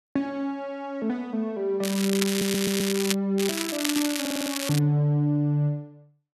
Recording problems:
crackle; from 2 to 3 s and from 3.5 to 5 s; loose cable, SNR 3 dB
audio stuttering; at 2.5 s and at 4 s

